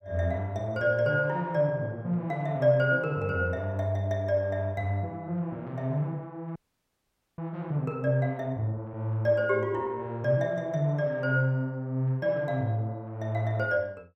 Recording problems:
frozen audio; at 6.5 s for 1 s

